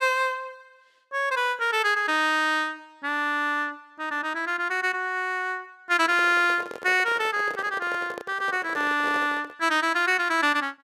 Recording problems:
handling noise; from 6 to 9.5 s; peak -8 dB vs average level

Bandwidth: 14.5 kHz